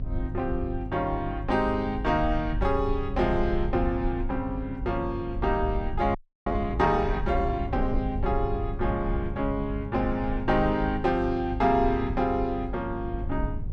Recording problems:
hum; 50 Hz, harmonics up to 400 Hz, SNR 11 dB
rumble; below 72 Hz, SNR 8 dB
audio freezing; at 6 s

